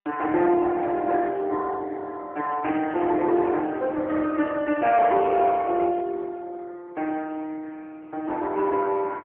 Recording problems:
telephone audio; 280 Hz to 3.3 kHz, AMR-NB

